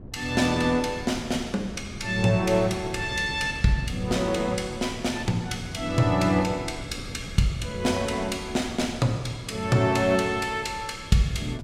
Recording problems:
wind on the microphone; below 240 Hz, SNR 14 dB

